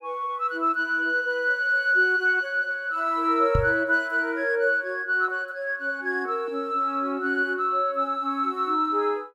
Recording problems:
microphone thump; at 3.5 s; peak +3 dB vs average level

